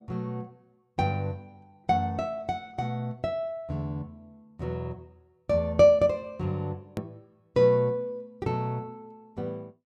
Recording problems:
edit click; at 7 s

